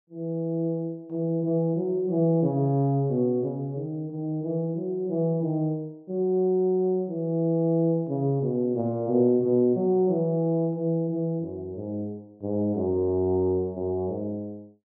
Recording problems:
none

